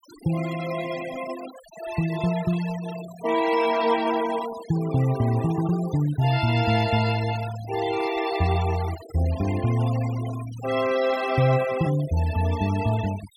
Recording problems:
noise reduction artefacts; signal-to-artefact ratio 14 dB

